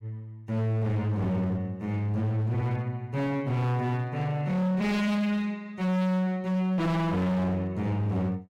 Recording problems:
distorted audio; hard clipping, signal-to-distortion ratio 7 dB

